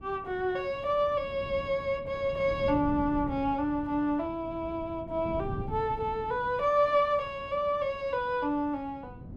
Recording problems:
wind on the microphone; below 230 Hz, SNR 14 dB

